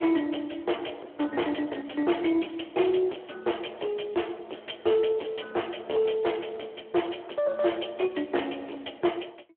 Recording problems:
phone line; 260 Hz to 3.4 kHz, Speex
distortion; hard clipping, signal-to-distortion ratio 13 dB

